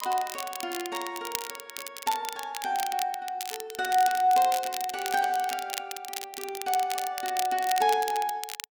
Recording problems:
crackling; vinyl, SNR 8 dB

